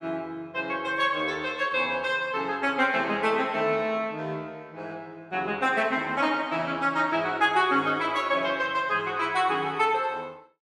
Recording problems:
none

